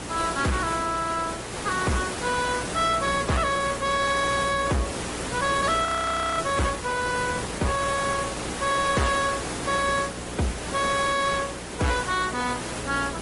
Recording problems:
codec artefacts; AAC, then MP3, log-spectral distance 12 dB, nothing above 10.7 kHz
distortion; hard clipping, signal-to-distortion ratio 7 dB
electrical hum; 60 Hz, harmonics up to 540 Hz, SNR 15 dB
background hiss; slope -4 dB per octave, SNR 6 dB
audio freezing; at 6 s for 0.5 s

